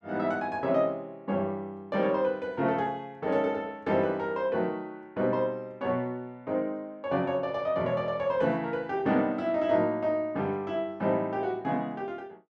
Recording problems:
none

